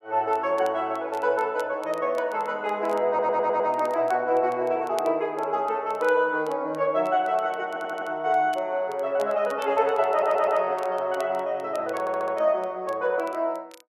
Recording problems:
crackling; vinyl, SNR 27 dB
audio stuttering; 4 times, first at 3 s

